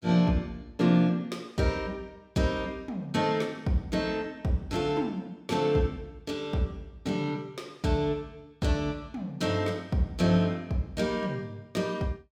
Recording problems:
none

